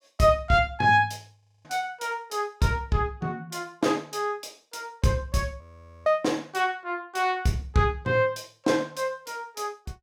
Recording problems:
audio freezing; at 1.5 s and at 5.5 s

